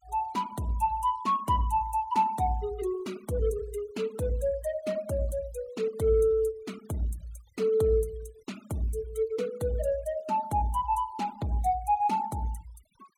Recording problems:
denoising artefacts; signal-to-artefact ratio 24 dB

